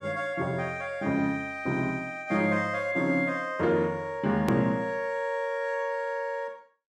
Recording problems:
click at an edit; at 4.5 s

